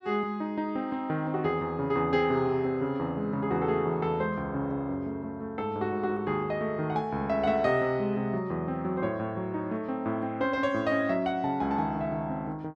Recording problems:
none

